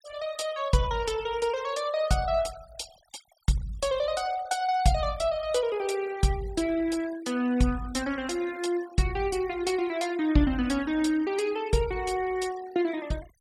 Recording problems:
noise reduction artefacts; signal-to-artefact ratio 19 dB

